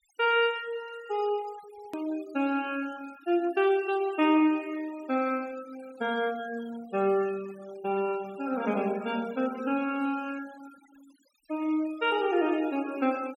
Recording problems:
noise reduction artefacts; signal-to-artefact ratio 22 dB
edit click; at 2 s

